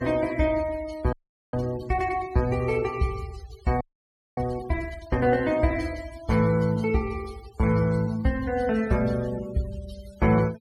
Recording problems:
noise reduction artefacts; signal-to-artefact ratio 20 dB
audio freezing; at 1 s and at 4 s for 0.5 s

